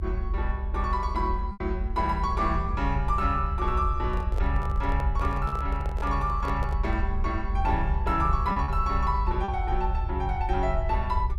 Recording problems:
low-frequency rumble; below 68 Hz, SNR 1 dB
lost packets; 2% of the sound replaced, filled with repeated pitch periods
microphone handling noise; from 4 to 7 s; peak -5 dB vs average level

